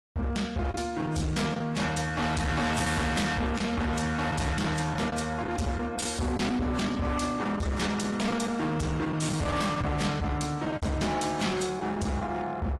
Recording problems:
codec artefacts; AAC, then AAC, log-spectral distance 3 dB, nothing above 11.3 kHz
distorted audio; hard clipping, signal-to-distortion ratio 6 dB
packet loss; 5% of the sound replaced, filled with the last packet

